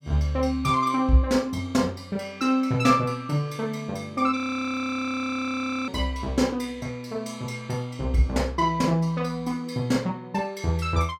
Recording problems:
frozen audio; at 4.5 s for 1.5 s

